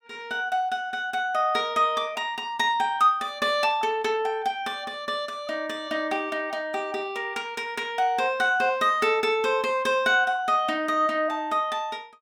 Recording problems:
none

